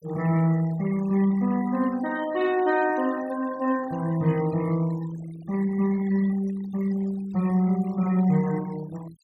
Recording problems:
noise reduction artefacts; signal-to-artefact ratio 20 dB

